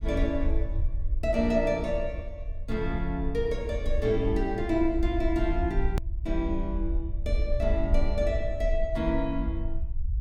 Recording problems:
rumble; below 60 Hz, SNR 3 dB
hard cut with a click; at 6 s

